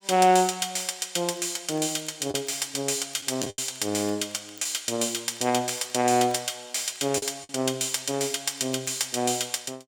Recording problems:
crackle; vinyl, SNR 26 dB
packet loss; 2% of the sound replaced, filled with the last packet

